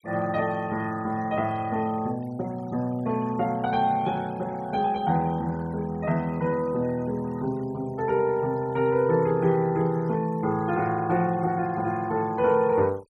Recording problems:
denoising artefacts; signal-to-artefact ratio 24 dB

